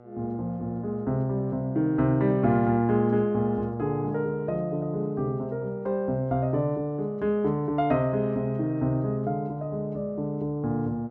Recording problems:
hum; 60 Hz, harmonics up to 1.4 kHz, SNR 24 dB

